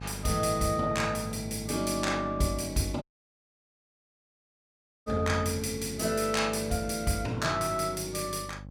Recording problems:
hum; 50 Hz, harmonics up to 850 Hz, SNR 13 dB
audio cutting out; at 3 s for 2 s

